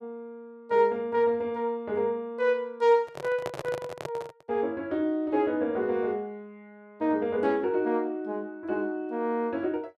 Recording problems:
microphone handling noise; from 3 to 4.5 s; peak -2 dB vs average level

